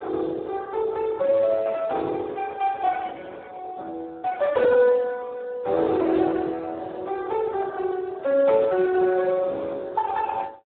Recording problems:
phone line; 280 Hz to 2.6 kHz, Speex

